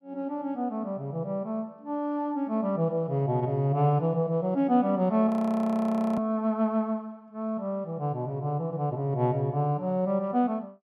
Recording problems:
audio freezing; at 5.5 s for 1 s

